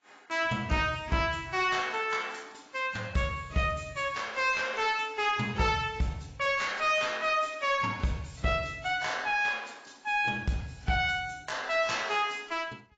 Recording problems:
codec artefacts; AAC, log-spectral distance 5 dB, nothing above 7.6 kHz
distortion; soft clipping, signal-to-distortion ratio 10 dB

